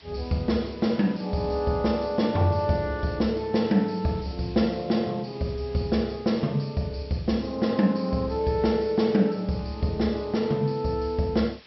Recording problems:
treble cut off; nothing above 5.6 kHz
hiss; slope 0 dB per octave, SNR 24 dB

